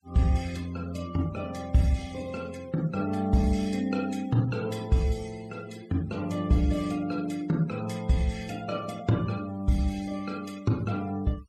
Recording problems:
noise reduction artefacts; signal-to-artefact ratio 22 dB

